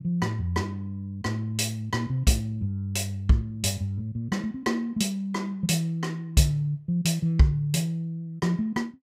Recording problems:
none

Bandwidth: 15.5 kHz